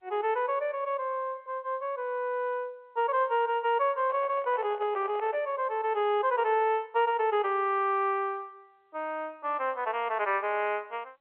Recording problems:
phone line; 320 Hz to 3.3 kHz, G.711
microphone handling noise; from 4 to 5.5 s; peak -12 dB vs average level

